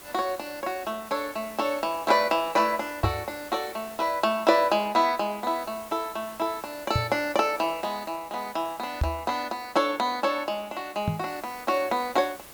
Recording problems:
background hiss; slope -3 dB per octave, SNR 18 dB
microphone thump; 4 times, first at 3 s; peak +5 dB vs average level

